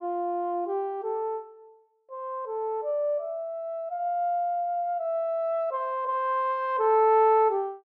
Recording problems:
none

